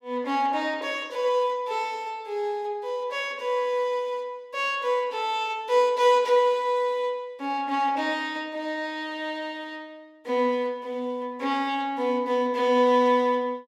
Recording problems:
none

